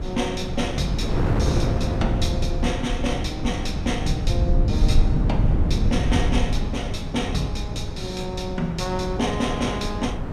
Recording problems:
low-frequency rumble; below 110 Hz, SNR -1 dB
wind noise; below 350 Hz, SNR 3 dB

